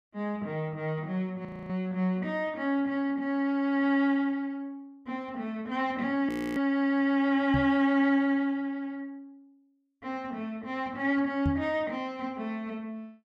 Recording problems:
audio freezing; at 1.5 s and at 6.5 s
knock on the microphone; at 7.5 s and at 11 s; peak +3 dB vs average level

